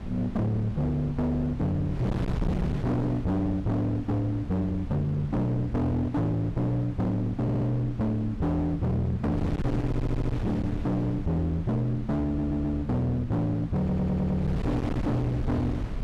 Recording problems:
distorted audio; hard clipping, signal-to-distortion ratio 6 dB
wind on the microphone; below 230 Hz, SNR 8 dB
audio stuttering; 4 times, first at 7.5 s

